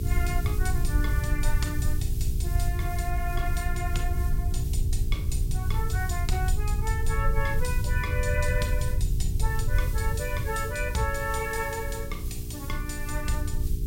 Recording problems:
mains hum; 60 Hz, harmonics up to 420 Hz, SNR 9 dB
hiss; slope +6 dB per octave, SNR 11 dB
rumble; below 88 Hz, SNR -4 dB

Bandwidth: 16 kHz